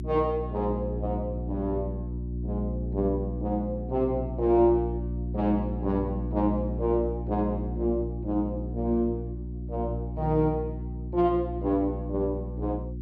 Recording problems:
hum; 60 Hz, harmonics up to 360 Hz, SNR 5 dB

